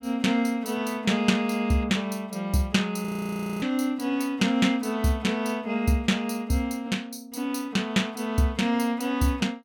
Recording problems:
frozen audio; at 3 s for 0.5 s

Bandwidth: 17.5 kHz